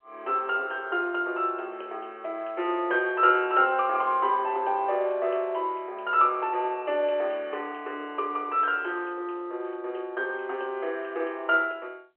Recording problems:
phone line; 320 Hz to 3.1 kHz, G.711

